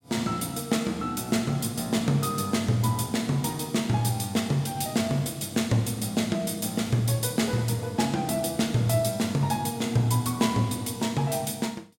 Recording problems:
none

